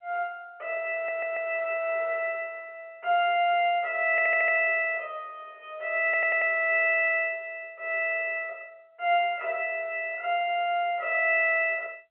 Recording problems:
telephone audio; 340 Hz to 3.3 kHz, G.711
stutter; at 1 s, at 4 s and at 6 s

